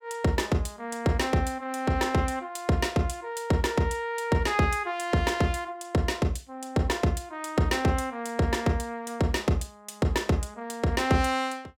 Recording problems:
none

